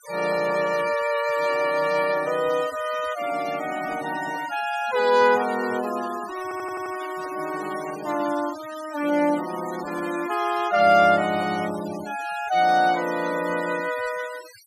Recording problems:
noise reduction artefacts; signal-to-artefact ratio 15 dB
stutter; at 6.5 s

